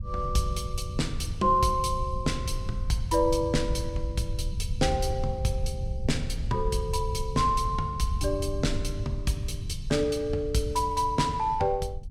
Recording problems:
rumble; below 94 Hz, SNR 5 dB

